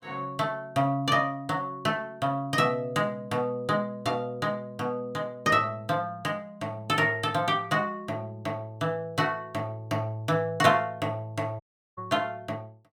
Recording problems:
audio cutting out; at 12 s

